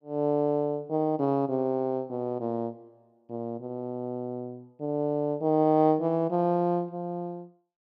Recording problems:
none

